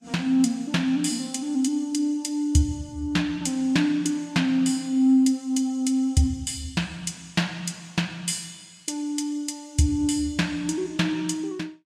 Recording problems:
codec artefacts; Vorbis, log-spectral distance 2 dB, nothing above 12 kHz

